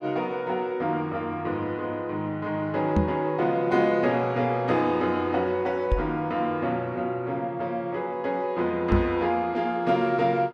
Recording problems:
knock on the microphone; at 3 s, at 6 s and at 9 s; peak +6 dB vs average level

